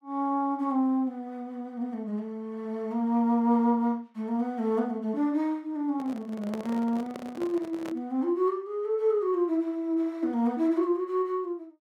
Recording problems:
microphone handling noise; from 6 to 8 s; peak -6 dB vs average level

